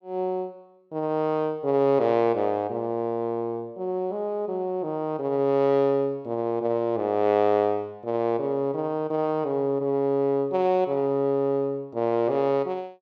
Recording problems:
none

